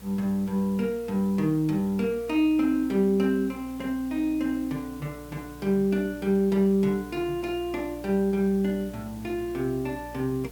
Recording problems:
mains hum; 60 Hz, harmonics up to 720 Hz, SNR 22 dB
background hiss; slope -2 dB per octave, SNR 24 dB

